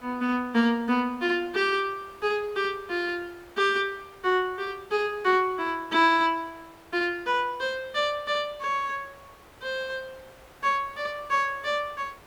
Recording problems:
hiss; SNR 25 dB

